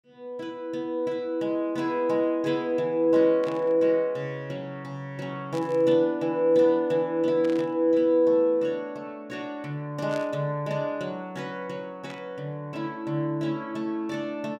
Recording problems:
burst of static; 5 times, first at 3.5 s; peak -13 dB vs average level

